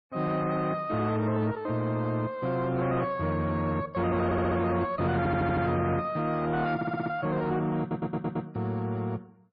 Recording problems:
codec artefacts; MP3, log-spectral distance 2 dB, nothing above 4.4 kHz
distortion; soft clipping, signal-to-distortion ratio 11 dB
stutter; 4 times, first at 4.5 s

